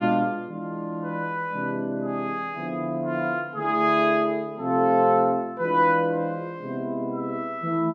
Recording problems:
none

